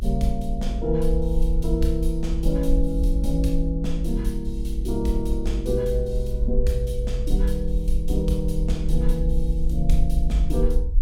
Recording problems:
rumble; below 54 Hz, SNR -1 dB

